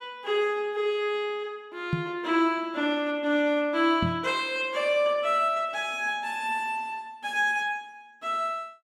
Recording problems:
microphone thump; at 2 s and at 4 s; peak +3 dB vs average level

